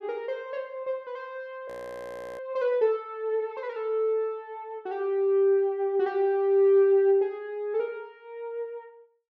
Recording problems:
frozen audio; at 1.5 s for 0.5 s

